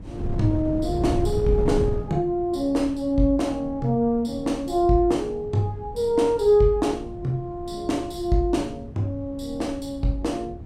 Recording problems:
wind on the microphone; below 180 Hz, SNR 11 dB

